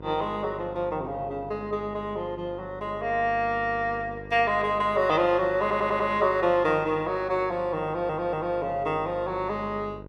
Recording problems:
electrical hum; 50 Hz, harmonics up to 1.1 kHz, SNR 16 dB
stutter; at 5.5 s and at 8 s

